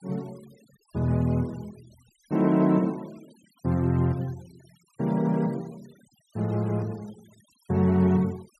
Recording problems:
denoising artefacts; signal-to-artefact ratio 28 dB

